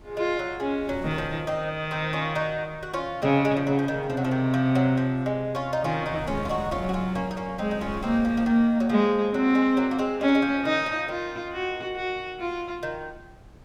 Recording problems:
wind on the microphone; below 340 Hz, SNR 20 dB

